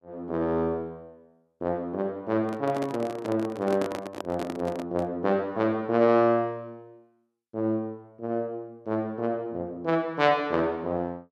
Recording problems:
microphone handling noise; from 2.5 to 5 s; peak -2 dB vs average level

